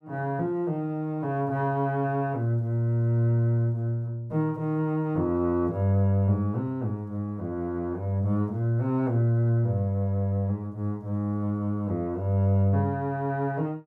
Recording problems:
none

